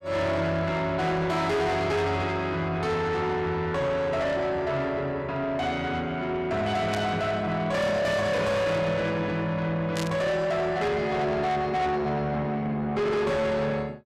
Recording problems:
distortion; soft clipping, signal-to-distortion ratio 8 dB
static burst; at 7 s and at 10 s; peak -4 dB vs average level

